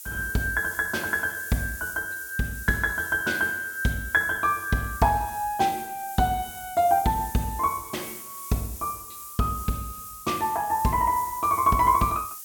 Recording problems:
background hiss; SNR 13 dB

